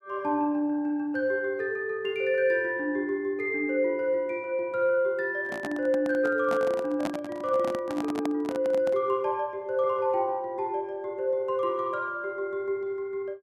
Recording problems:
microphone handling noise; from 5.5 to 9 s; peak -1 dB vs average level

